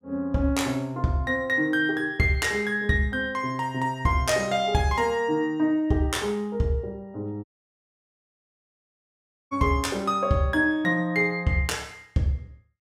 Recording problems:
audio cutting out; at 7.5 s for 2 s

